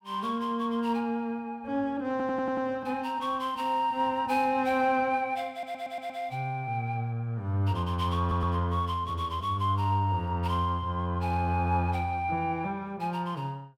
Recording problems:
audio stuttering; at 2 s, at 5.5 s and at 8 s

